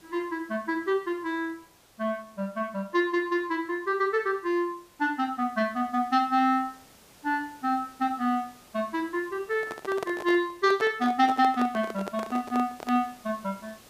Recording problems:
hiss; slope -3 dB per octave, SNR 26 dB
handling noise; from 9.5 to 13 s; peak -1 dB vs average level

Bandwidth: 15 kHz